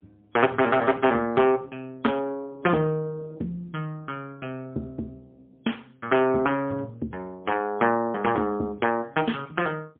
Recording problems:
telephone audio; 190 Hz to 3.3 kHz, AMR-NB, then MP3

